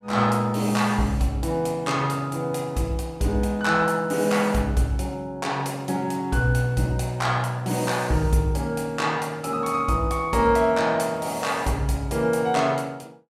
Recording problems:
none

